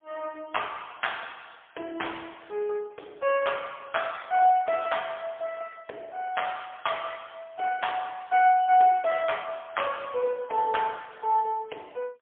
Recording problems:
phone line; 300 Hz to 3.4 kHz, AMR-NB, then MP3

